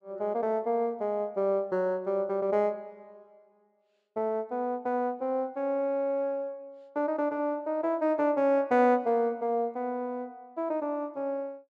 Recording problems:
none

